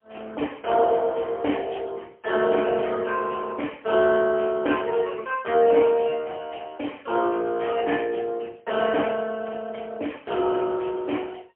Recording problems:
telephone audio; 260 Hz to 3.1 kHz, AMR-NB, then MP3

